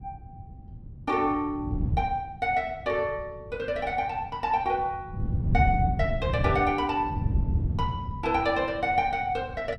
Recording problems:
wind noise; below 150 Hz, SNR 3 dB

